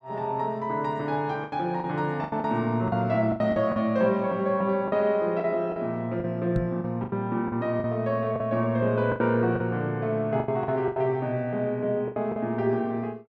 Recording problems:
lost packets; 10% of the sound replaced, filled with the last packet
microphone bump; at 6.5 s; peak +4 dB vs average level

